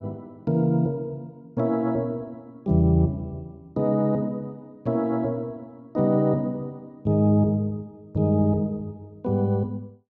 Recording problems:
none

